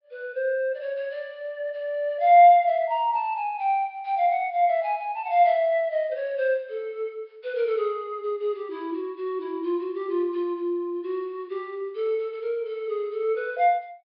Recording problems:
low-pass filter; nothing above 5.3 kHz

